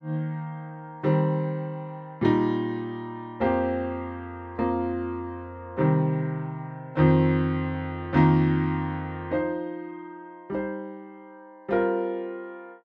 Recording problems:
none

